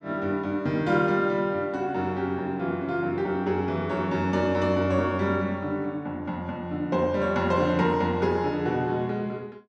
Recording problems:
none

